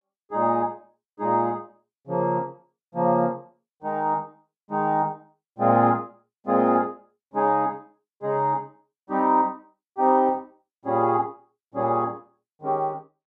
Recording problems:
none

